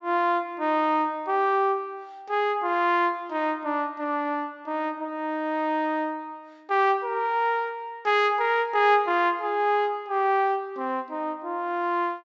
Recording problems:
treble missing; nothing above 8 kHz

